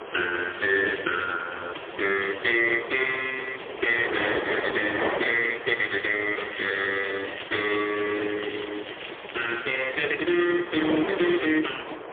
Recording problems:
phone line; 280 Hz to 3.2 kHz, AMR-NB, then MP3
wind noise; below 1.2 kHz, SNR 10 dB
crackle; at 0.5 s, from 6.5 to 9.5 s and at 11 s; loose cable, SNR 15 dB

